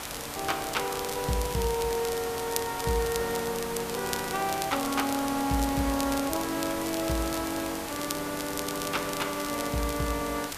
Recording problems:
hiss; slope -3 dB per octave, SNR 6 dB
crackling; vinyl, SNR 9 dB

